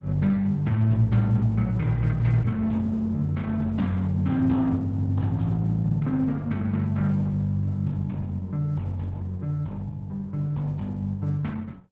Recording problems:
codec artefacts; Opus, log-spectral distance 2 dB

